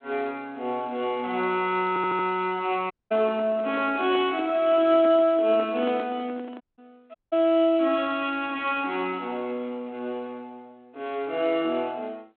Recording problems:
telephone audio; 240 Hz to 3.9 kHz, G.726
stutter; at 2 s
handling noise; from 3 to 7 s; peak -6 dB vs average level
dropout; at 3 s, at 6.5 s and at 7 s

